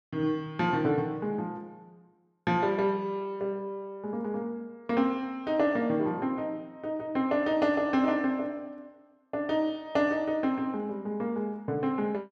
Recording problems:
none

